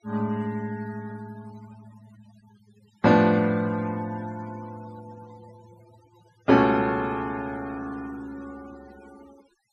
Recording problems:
denoising artefacts; signal-to-artefact ratio 24 dB

